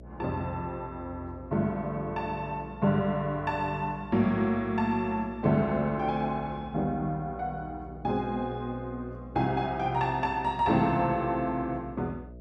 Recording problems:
hum; 60 Hz, harmonics up to 660 Hz, SNR 17 dB

